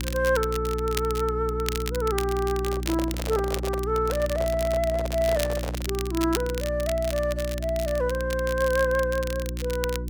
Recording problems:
hum; 60 Hz, harmonics up to 360 Hz, SNR 6 dB
crackle; vinyl, SNR 10 dB
handling noise; from 2.5 to 6 s; peak -4 dB vs average level

